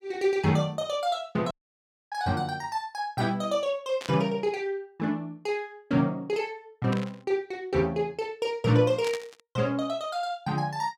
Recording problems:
audio cutting out; at 1.5 s for 0.5 s
static burst; at 4 s, at 7 s and at 9 s; peak -4 dB vs average level

